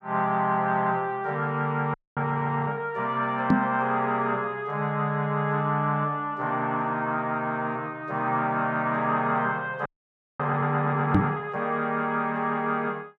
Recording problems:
frozen audio; at 2 s and at 10 s for 0.5 s
microphone thump; at 3.5 s and at 11 s; peak +9 dB vs average level

